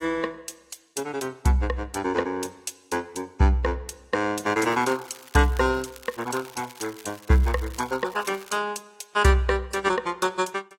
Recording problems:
lossy compression; AAC, log-spectral distance 4 dB, nothing above 15.1 kHz
crackling; from 4.5 to 8.5 s; loose cable, SNR 20 dB

